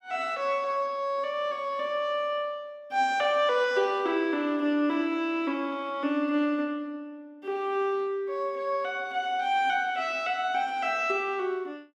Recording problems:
none

